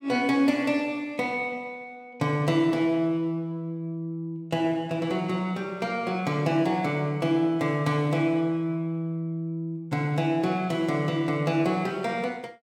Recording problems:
none

